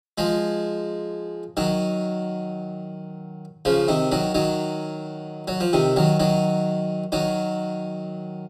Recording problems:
none

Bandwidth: 14 kHz